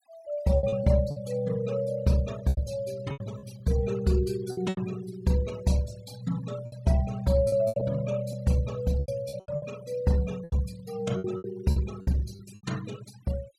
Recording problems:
denoising artefacts; signal-to-artefact ratio 20 dB
packet loss; 10% of the sound replaced, filled with repeated pitch periods

